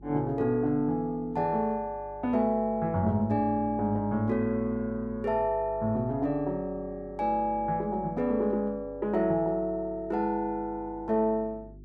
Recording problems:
hum; 50 Hz, harmonics up to 400 Hz, SNR 20 dB

